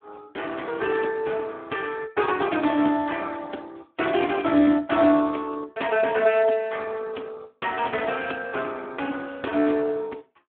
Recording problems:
telephone audio; 220 Hz to 3.5 kHz, Speex

